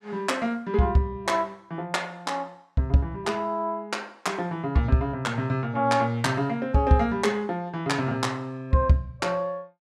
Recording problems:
none

